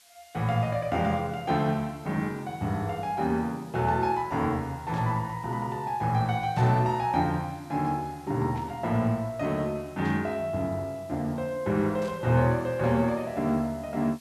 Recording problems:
background hiss; slope +3 dB per octave, SNR 27 dB
static burst; 5 times, first at 5 s; peak -14 dB vs average level

